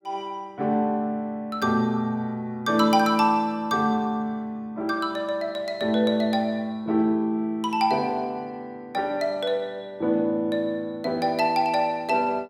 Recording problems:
none

